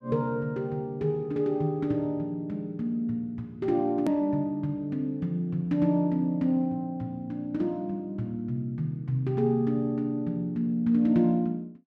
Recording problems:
click at an edit; at 4 s

